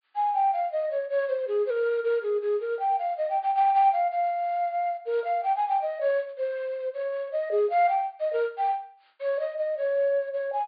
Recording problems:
treble cut off; nothing above 4.8 kHz

